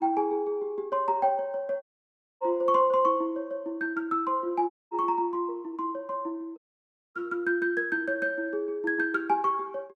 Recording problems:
dropout; at 2 s for 0.5 s, at 4.5 s and at 6.5 s for 0.5 s

